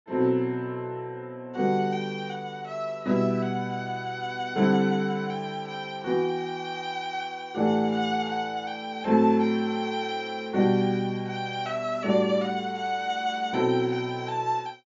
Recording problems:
treble cut off; nothing above 7.4 kHz

